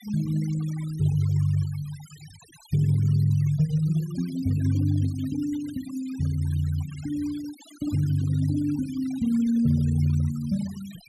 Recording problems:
noise reduction artefacts; signal-to-artefact ratio 22 dB

